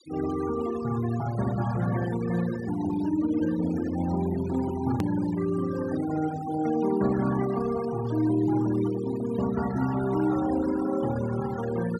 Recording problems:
denoising artefacts; signal-to-artefact ratio 13 dB
hard cut with a click; at 5 s

